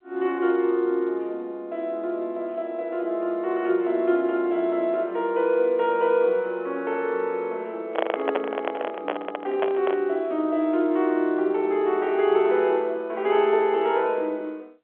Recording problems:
telephone audio; 240 Hz to 3.6 kHz, G.711
handling noise; from 8 to 10 s; peak +3 dB vs average level

